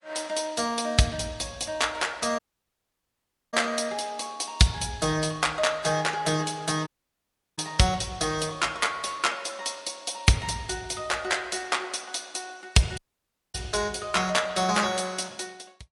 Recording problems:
codec artefacts; MP3, log-spectral distance 5 dB, nothing above 11 kHz
audio cutting out; at 2.5 s for 1 s, at 7 s for 0.5 s and at 13 s for 0.5 s

